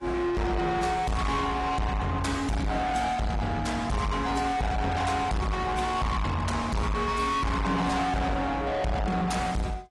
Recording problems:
codec artefacts; AAC, log-spectral distance 3 dB, nothing above 11 kHz
distorted audio; soft clipping, signal-to-distortion ratio 6 dB

